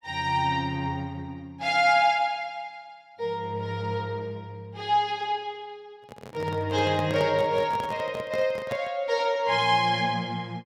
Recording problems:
microphone handling noise; from 6 to 9 s; peak -5 dB vs average level

